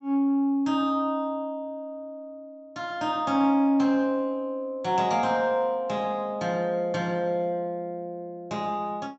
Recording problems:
treble cut off; nothing above 7.8 kHz

